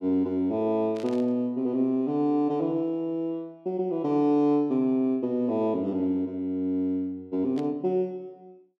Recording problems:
burst of static; at 1 s and at 7.5 s; peak -15 dB vs average level

